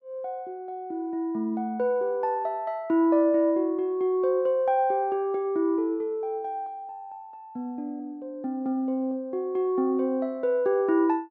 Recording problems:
none

